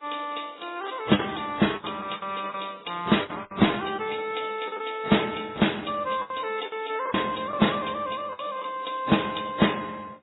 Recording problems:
lossy compression; MP3, then AAC, log-spectral distance 11 dB, nothing above 3.8 kHz
packet loss; 8% of the sound replaced, filled with the last packet

